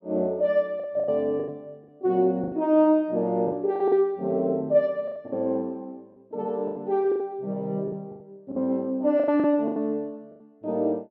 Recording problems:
packet loss; 10% of the sound replaced, filled with the last packet

